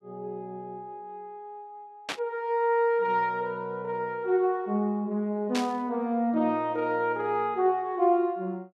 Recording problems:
static burst; at 2 s and at 5.5 s; peak 0 dB vs average level

